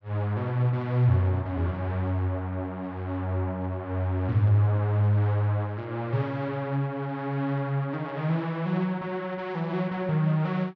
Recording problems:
none

